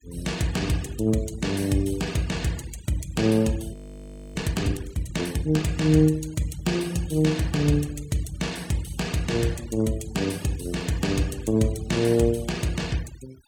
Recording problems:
noise reduction artefacts; signal-to-artefact ratio 20 dB
frozen audio; at 3.5 s for 0.5 s

